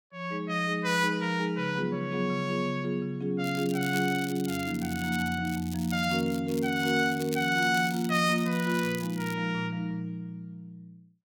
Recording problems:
crackle; from 3.5 to 6.5 s and from 6.5 to 9.5 s; loose cable, SNR 15 dB

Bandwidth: 17 kHz